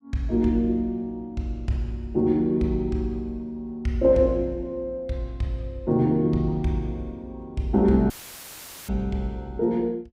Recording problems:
dropout; at 8 s for 1 s; filled with static

